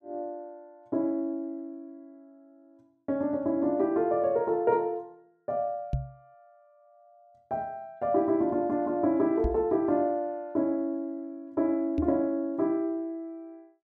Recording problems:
microphone bump; at 6 s, at 9.5 s and at 12 s; peak +3 dB vs average level

